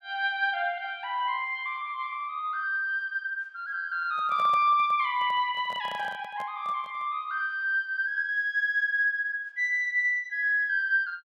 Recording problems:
handling noise; from 4 to 7 s; peak -10 dB vs average level

